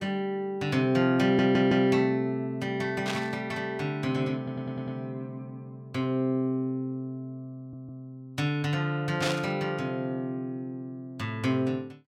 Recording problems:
stutter; at 1 s, at 4.5 s and at 7.5 s
static burst; at 3 s and at 9 s; peak +1 dB vs average level

